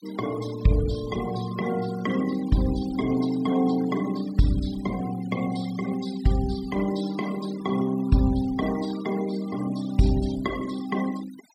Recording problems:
noise reduction artefacts; signal-to-artefact ratio 17 dB

